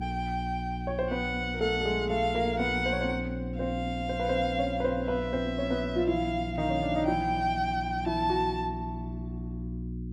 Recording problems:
hum; 60 Hz, harmonics up to 360 Hz, SNR 7 dB

